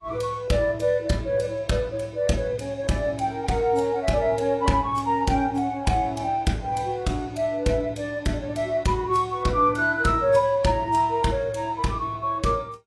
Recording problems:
lossy codec; AAC, log-spectral distance 2 dB, nothing above 11 kHz

